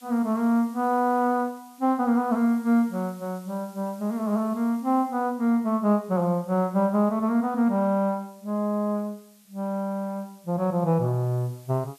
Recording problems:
hiss; slope +2 dB per octave, SNR 28 dB

